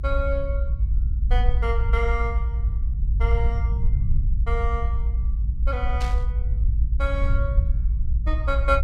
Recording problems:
low-frequency rumble; below 64 Hz, SNR -6 dB
static burst; at 6 s; peak -2 dB vs average level

